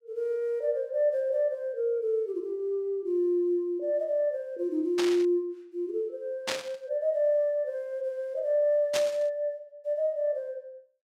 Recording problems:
static burst; at 5 s, at 6.5 s and at 9 s; peak +2 dB vs average level

